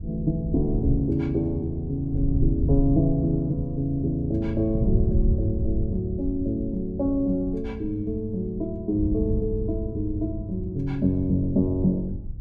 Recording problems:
wind on the microphone; below 100 Hz, SNR 5 dB

